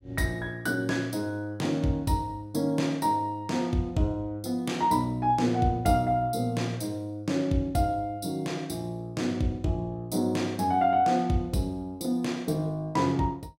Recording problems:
none

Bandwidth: 16 kHz